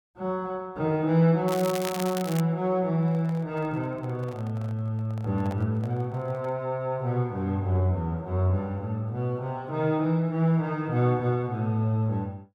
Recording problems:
crackle; at 1.5 s; loose cable, SNR 10 dB
microphone handling noise; from 3 to 6.5 s; peak -9 dB vs average level

